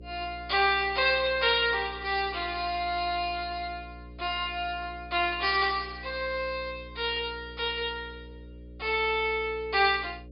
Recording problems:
treble cut off; nothing above 5.5 kHz
hum; 60 Hz, harmonics up to 600 Hz, SNR 18 dB

